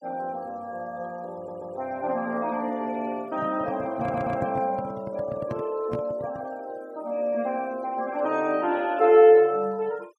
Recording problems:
noise reduction artefacts; signal-to-artefact ratio 27 dB
audio stuttering; at 1.5 s and at 4 s
handling noise; from 3.5 to 6.5 s; peak -3 dB vs average level

